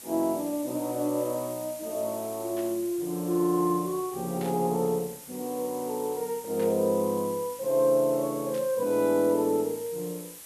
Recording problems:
background hiss; slope 0 dB per octave, SNR 14 dB
static burst; 4 times, first at 2.5 s; peak -13 dB vs average level

